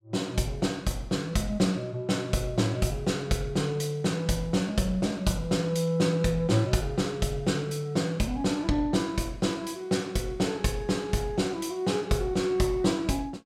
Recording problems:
none

